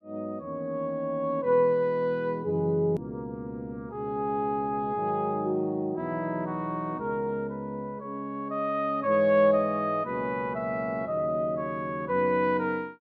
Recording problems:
edit click; at 3 s

